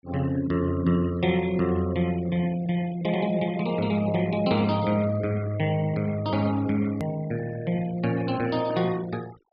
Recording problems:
low-pass filter; nothing above 5.5 kHz
denoising artefacts; signal-to-artefact ratio 19 dB
hard cut with a click; at 7 s

